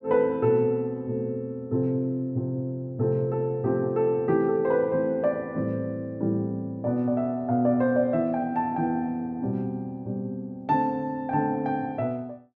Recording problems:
none

